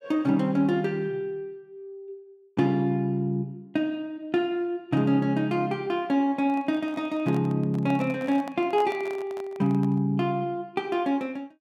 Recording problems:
handling noise; from 6.5 to 10 s; peak -8 dB vs average level

